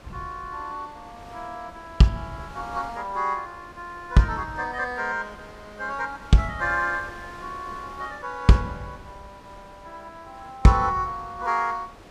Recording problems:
wind on the microphone; below 1.5 kHz, SNR 21 dB

